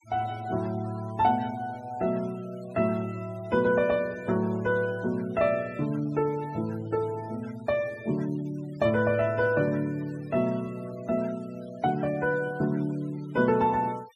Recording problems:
noise reduction artefacts; signal-to-artefact ratio 22 dB

